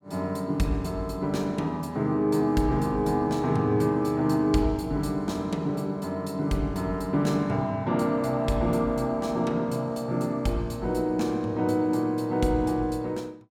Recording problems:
none

